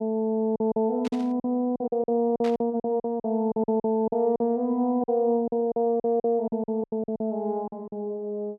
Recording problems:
lost packets; 14% of the sound replaced, filled with silence
burst of static; at 1 s and at 2.5 s; peak -10 dB vs average level

